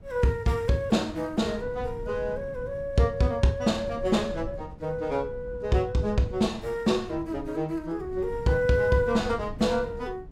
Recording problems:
wind on the microphone; below 160 Hz, SNR 15 dB

